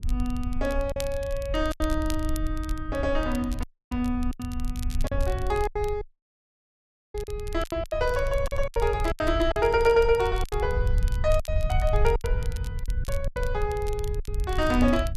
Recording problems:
low-frequency rumble; below 72 Hz, SNR 4 dB
crackle; vinyl, SNR 19 dB
lost packets; 9% of the sound replaced, filled with silence
dropout; at 3.5 s and at 6 s for 1 s

